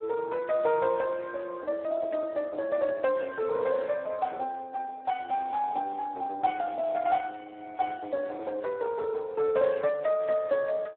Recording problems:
telephone audio; 280 Hz to 3.4 kHz, Speex

